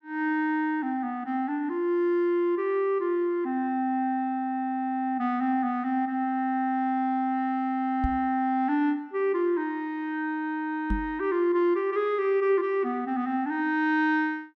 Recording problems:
microphone bump; at 8 s and at 11 s; peak 0 dB vs average level

